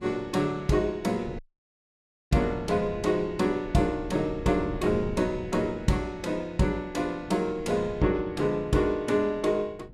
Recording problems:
wind noise; below 220 Hz, SNR 15 dB
dropout; at 1.5 s for 1 s

